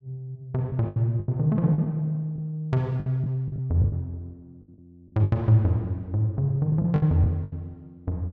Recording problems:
lost packets; 10% of the sound replaced, filled with the last packet

